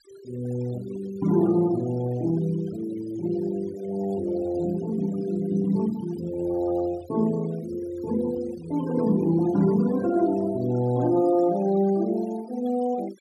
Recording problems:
noise reduction artefacts; signal-to-artefact ratio 20 dB

